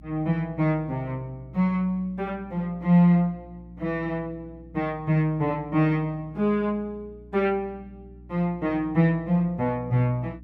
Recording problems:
electrical hum; 60 Hz, harmonics up to 300 Hz, SNR 22 dB

